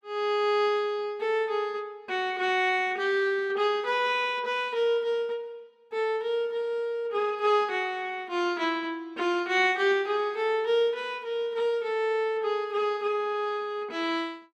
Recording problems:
none

